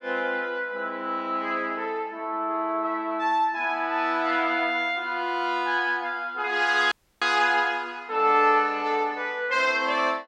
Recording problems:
dropout; at 7 s

